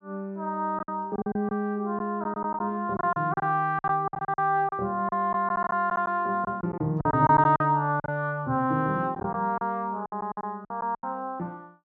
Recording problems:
treble cut off; nothing above 6.2 kHz
lost packets; 12% of the sound replaced, filled with silence

